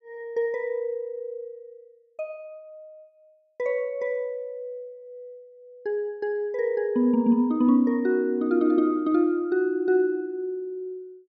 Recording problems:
none

